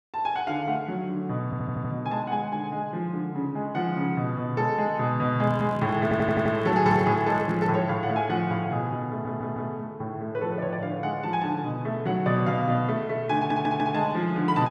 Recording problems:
audio stuttering; 4 times, first at 1.5 s
handling noise; from 5.5 to 8 s; peak -4 dB vs average level

